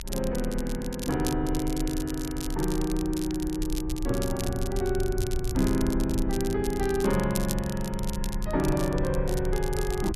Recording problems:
rumble; below 58 Hz, strongest tone 28 Hz, SNR 7 dB
crackle; vinyl, SNR 11 dB

